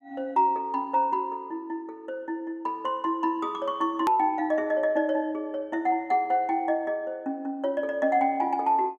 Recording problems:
edit click; at 4 s

